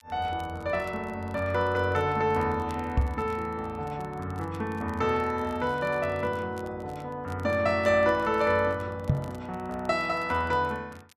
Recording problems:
crackle; vinyl, SNR 28 dB
microphone thump; at 3 s and at 9 s; peak +7 dB vs average level

